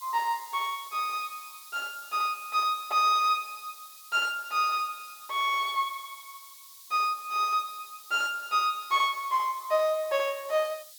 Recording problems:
hiss; SNR 18 dB

